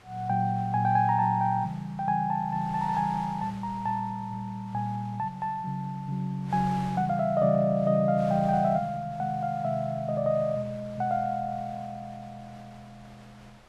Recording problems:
wind on the microphone; below 2.4 kHz, SNR 23 dB

